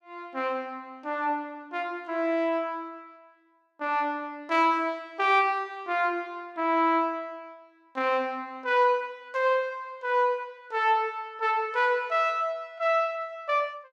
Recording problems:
none

